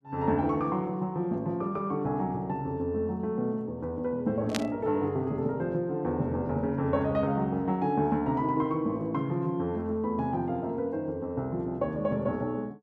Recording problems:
burst of static; at 4.5 s; peak +3 dB vs average level

